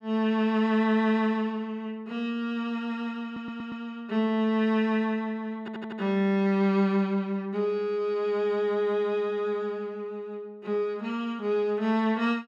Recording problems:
audio stuttering; at 3.5 s and at 5.5 s

